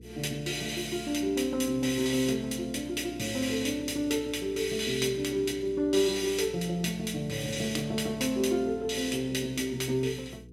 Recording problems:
hum; 60 Hz, harmonics up to 480 Hz, SNR 19 dB

